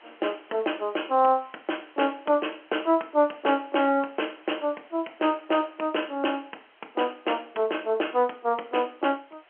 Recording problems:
telephone audio; 280 Hz to 3.2 kHz, G.711
hiss; SNR 28 dB

